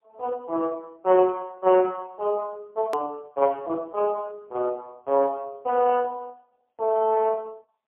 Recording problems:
telephone audio; 280 Hz to 2.6 kHz, AMR-NB, then MP3
click at an edit; at 3 s

